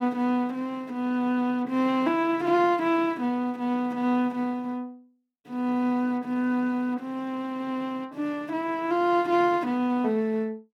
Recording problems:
none

